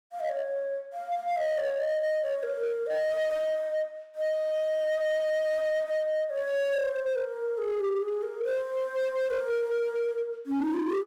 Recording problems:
distortion; hard clipping, signal-to-distortion ratio 10 dB

